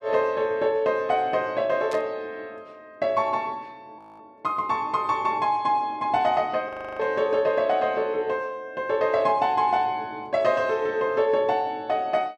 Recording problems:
static burst; at 2 s; peak -11 dB vs average level
audio freezing; at 4 s and at 6.5 s

